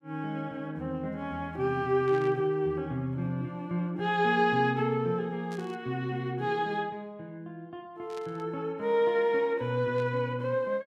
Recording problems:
burst of static; 4 times, first at 2 s; peak -15 dB vs average level

